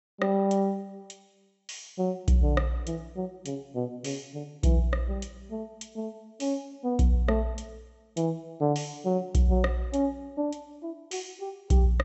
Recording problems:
treble cut off; nothing above 7.8 kHz

